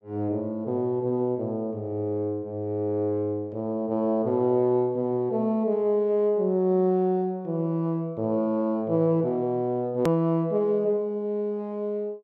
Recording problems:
click at an edit; at 10 s

